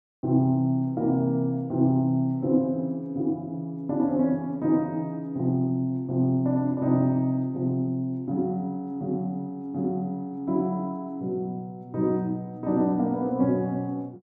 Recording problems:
none

